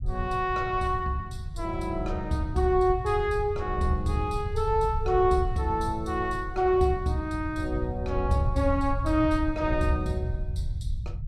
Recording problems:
low-frequency rumble; below 98 Hz, SNR 7 dB

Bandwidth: 14 kHz